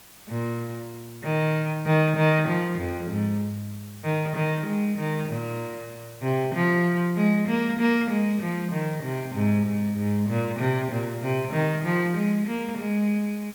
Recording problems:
hiss; slope -1 dB per octave, SNR 21 dB

